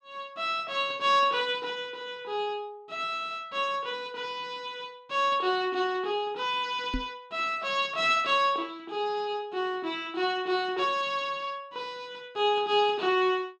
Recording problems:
microphone thump; at 7 s; peak 0 dB vs average level

